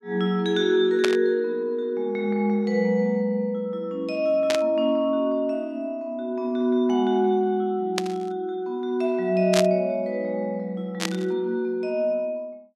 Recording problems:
static burst; 5 times, first at 1 s; peak +3 dB vs average level

